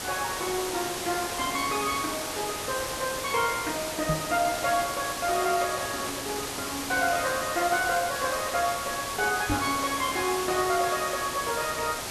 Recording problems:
background hiss; slope -2 dB per octave, SNR 4 dB
microphone bump; at 4 s and at 9.5 s; peak +3 dB vs average level

